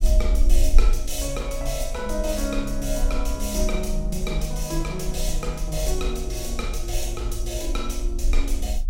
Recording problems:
rumble; below 44 Hz, strongest tone 24 Hz, SNR -1 dB

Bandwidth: 16.5 kHz